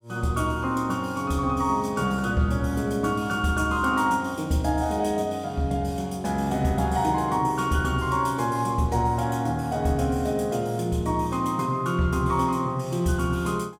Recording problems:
none

